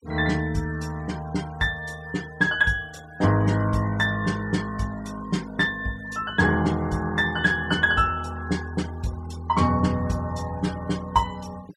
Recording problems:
denoising artefacts; signal-to-artefact ratio 22 dB

